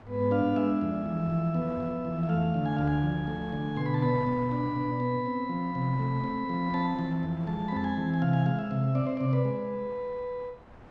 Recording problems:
wind on the microphone; below 970 Hz, SNR 22 dB

